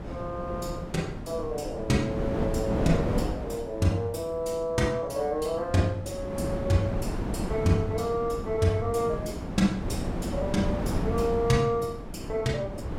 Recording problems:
wind noise; below 380 Hz, SNR 5 dB

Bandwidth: 16.5 kHz